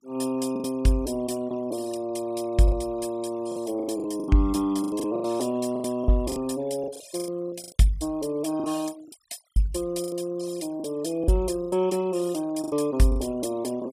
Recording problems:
noise reduction artefacts; signal-to-artefact ratio 22 dB
lost packets; 11% of the sound replaced, filled with the last packet

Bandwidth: 15 kHz